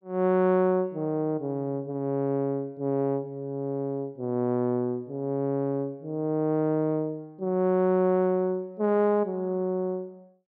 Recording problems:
none

